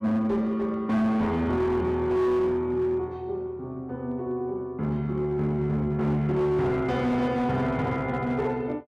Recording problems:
distortion; hard clipping, signal-to-distortion ratio 12 dB

